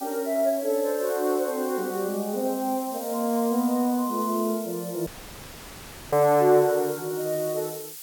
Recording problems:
background hiss; slope +4 dB per octave, SNR 13 dB
audio cutting out; at 5 s for 1 s

